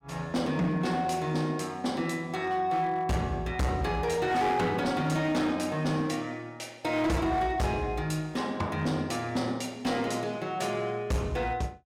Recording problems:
distorted audio; hard clipping, signal-to-distortion ratio 10 dB

